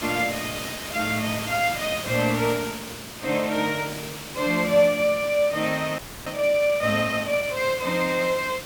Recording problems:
background hiss; slope -2 dB per octave, SNR 10 dB
audio freezing; at 6 s

